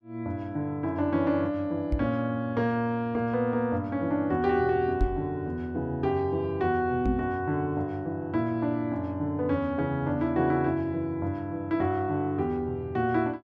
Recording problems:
microphone bump; at 2 s, at 5 s and at 7 s; peak +4 dB vs average level

